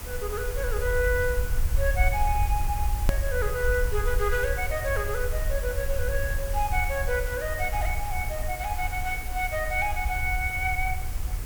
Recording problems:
background hiss; slope -3 dB per octave, SNR 9 dB
rumble; below 68 Hz, SNR 2 dB
hard cut with a click; at 3 s

